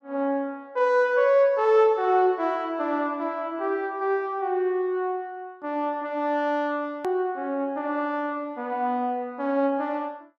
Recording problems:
hard cut with a click; at 7 s

